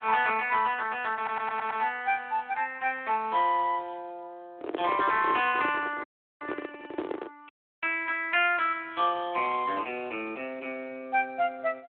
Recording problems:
phone line; 260 Hz to 3.4 kHz, Speex
stutter; at 1 s
handling noise; from 4.5 to 7.5 s; peak 0 dB vs average level
audio cutting out; at 6 s and at 7.5 s

